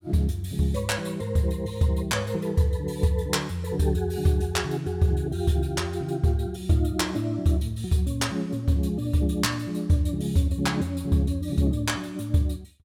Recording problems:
none

